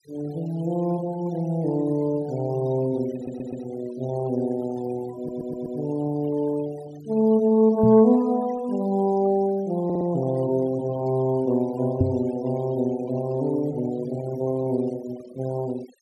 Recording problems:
denoising artefacts; signal-to-artefact ratio 21 dB
stutter; at 3 s, at 5 s and at 10 s
microphone thump; at 8 s and at 12 s; peak +6 dB vs average level

